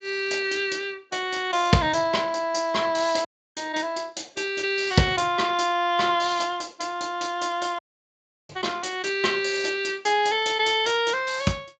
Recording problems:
lossy codec; Speex, log-spectral distance 5 dB, nothing above 7.3 kHz
audio cutting out; at 3.5 s and at 8 s for 0.5 s

